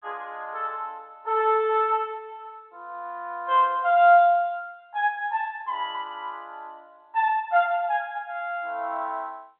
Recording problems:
phone line; 260 Hz to 3.5 kHz, G.711

